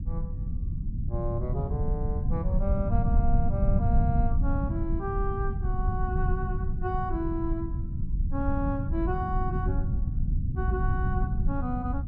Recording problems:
rumble; below 110 Hz, SNR -4 dB

